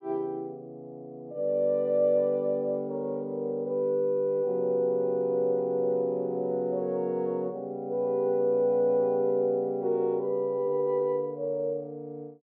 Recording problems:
none

